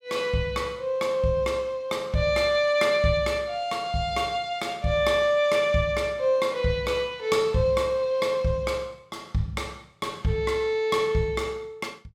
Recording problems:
none

